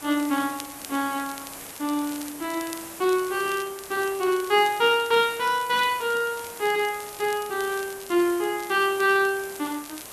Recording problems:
background hiss; slope -3 dB per octave, SNR 14 dB
crackling; vinyl, SNR 20 dB

